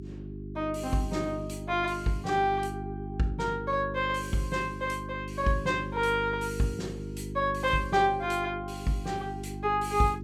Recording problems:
mains hum; 50 Hz, harmonics up to 400 Hz, SNR 9 dB

